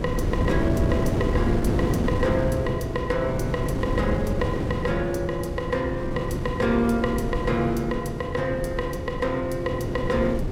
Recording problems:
wind noise; below 340 Hz, SNR 1 dB

